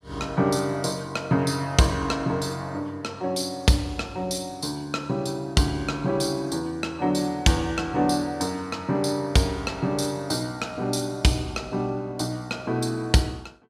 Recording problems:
none

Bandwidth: 15 kHz